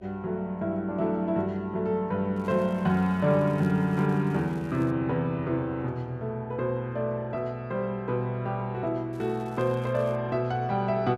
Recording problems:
hum; 60 Hz, harmonics up to 660 Hz, SNR 28 dB
crackle; from 2.5 to 5 s and from 9 to 10 s; loose cable, SNR 29 dB

